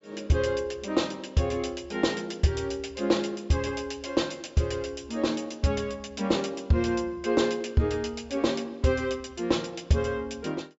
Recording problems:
treble cut off; nothing above 8 kHz

